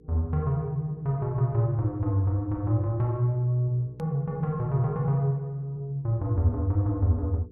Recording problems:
hum; 60 Hz, harmonics up to 480 Hz, SNR 26 dB
click at an edit; at 4 s

